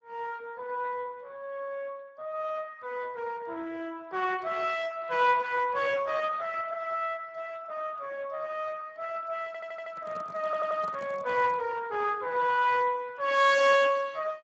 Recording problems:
lossy compression; Speex, log-spectral distance 4 dB, nothing above 7.3 kHz
audio stuttering; at 9.5 s and at 10 s
microphone handling noise; from 9.5 to 12 s; peak -9 dB vs average level

